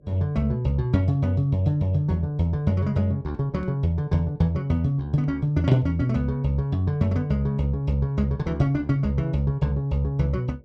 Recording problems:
mains hum; 50 Hz, harmonics up to 600 Hz, SNR 32 dB

